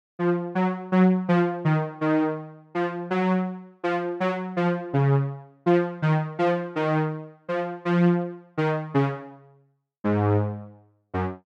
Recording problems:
none

